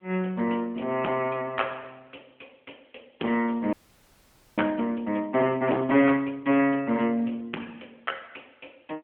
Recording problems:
phone line; 190 Hz to 3.2 kHz, AMR-NB
distortion; hard clipping, signal-to-distortion ratio 13 dB
audio freezing; at 3.5 s for 1 s

